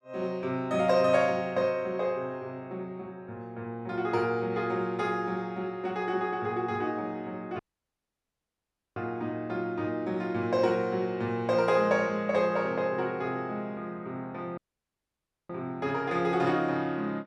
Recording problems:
audio cutting out; at 7.5 s for 1.5 s and at 15 s for 1 s

